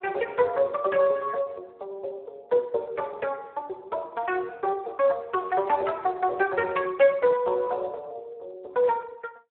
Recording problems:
telephone audio; 320 Hz to 3.2 kHz, Speex

